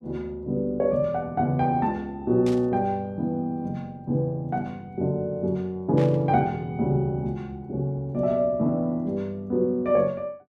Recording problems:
burst of static; at 2.5 s and at 6 s; peak -10 dB vs average level

